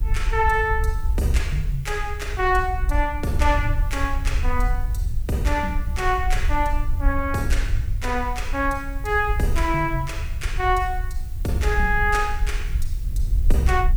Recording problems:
hiss; slope +1 dB per octave, SNR 25 dB
wind noise; below 60 Hz, SNR 2 dB

